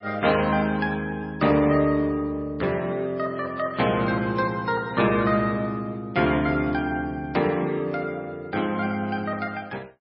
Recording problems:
lossy codec; MP3, log-spectral distance 2 dB, nothing above 4.8 kHz

